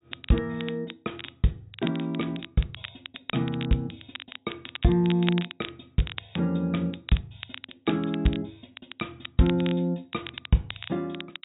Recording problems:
treble missing; nothing above 4 kHz
crackle; vinyl, SNR 12 dB

